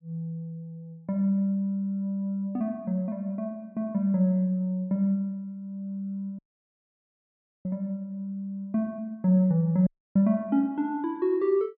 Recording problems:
dropout; at 6.5 s for 1.5 s and at 10 s

